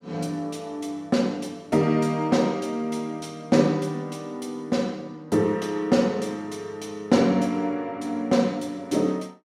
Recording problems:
none

